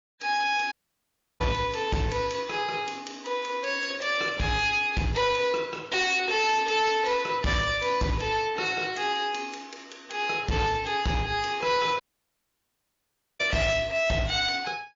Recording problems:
lossy compression; MP3, log-spectral distance 4 dB, nothing above 6.5 kHz
distortion; hard clipping, signal-to-distortion ratio 11 dB
dropout; at 0.5 s for 0.5 s and at 12 s for 1.5 s

